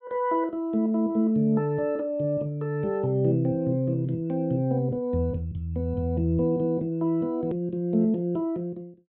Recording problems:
treble cut off; nothing above 4 kHz
hard cut with a click; at 7.5 s

